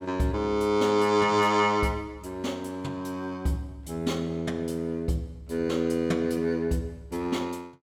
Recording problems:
none

